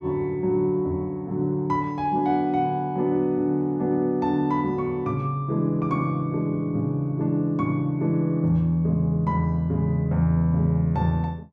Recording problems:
none

